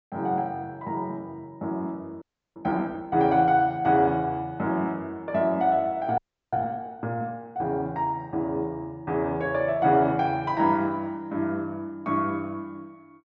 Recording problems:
low-pass filter; nothing above 8 kHz
audio freezing; at 2 s and at 6 s

